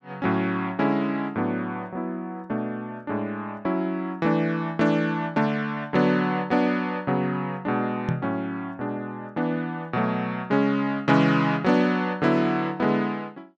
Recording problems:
microphone thump; at 8 s; peak +2 dB vs average level

